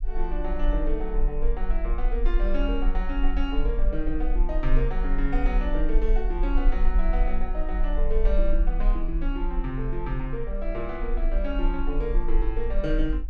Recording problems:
low-frequency rumble; below 38 Hz, strongest tone 20 Hz, SNR -3 dB

